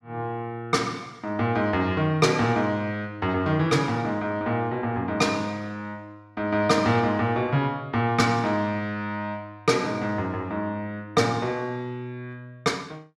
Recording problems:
none

